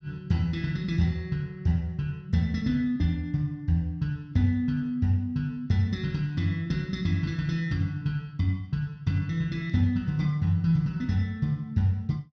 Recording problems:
none

